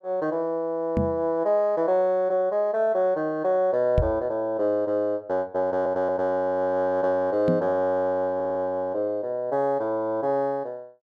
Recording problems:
microphone thump; at 1 s, at 4 s and at 7.5 s; peak +4 dB vs average level
stutter; at 5.5 s and at 8.5 s

